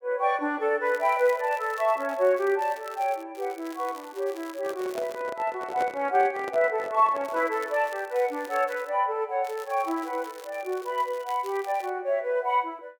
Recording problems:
crackle; 4 times, first at 1 s; loose cable, SNR 22 dB
microphone handling noise; from 4.5 to 7.5 s; peak -2 dB vs average level

